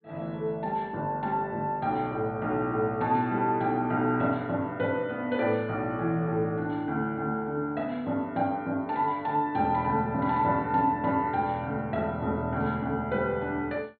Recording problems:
low-pass filter; nothing above 4.4 kHz

